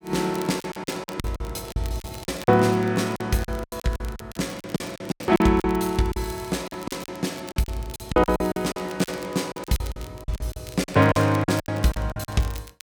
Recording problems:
crackle; vinyl, SNR 20 dB
lost packets; 17% of the sound replaced, filled with silence

